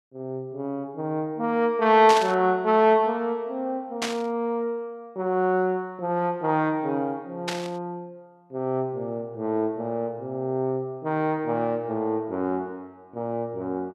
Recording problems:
burst of static; at 2 s, at 4 s and at 7.5 s; peak +2 dB vs average level

